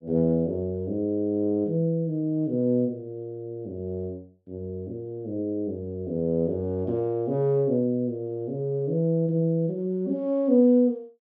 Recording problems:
none

